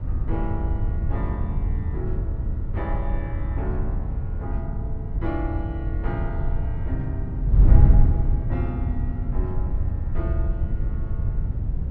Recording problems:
wind noise; below 94 Hz, SNR -10 dB

